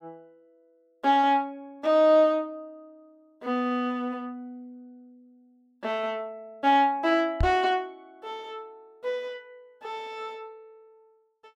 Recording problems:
knock on the microphone; at 7.5 s; peak +2 dB vs average level

